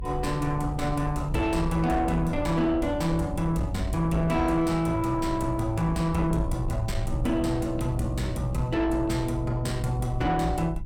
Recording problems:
distortion; soft clipping, signal-to-distortion ratio 12 dB
low-frequency rumble; below 100 Hz, SNR 8 dB

